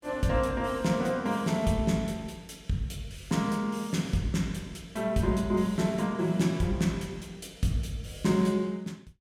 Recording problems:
none

